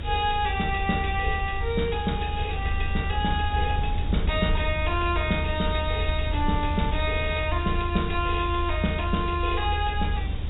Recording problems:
treble missing; nothing above 4 kHz
hiss; SNR 17 dB
low-frequency rumble; below 80 Hz, SNR 2 dB

